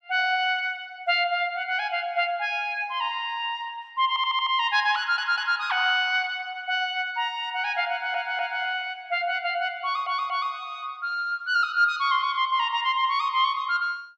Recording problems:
audio stuttering; 4 times, first at 4 s

